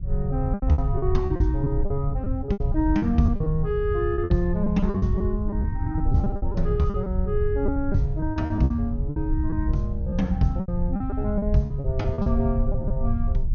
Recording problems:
low-pass filter; nothing above 6.6 kHz
rumble; below 88 Hz, SNR 2 dB
packet loss; 15% of the sound replaced, filled with repeated pitch periods

